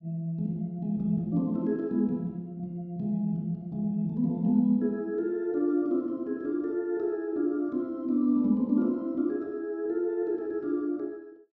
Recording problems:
none

